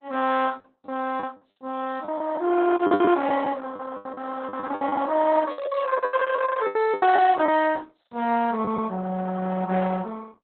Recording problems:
codec artefacts; Opus, log-spectral distance 4 dB, nothing above 3.7 kHz
lost packets; 10% of the sound replaced, filled with the last packet

